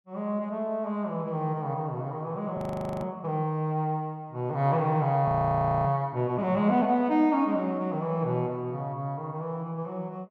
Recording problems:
audio freezing; at 2.5 s and at 5.5 s for 0.5 s

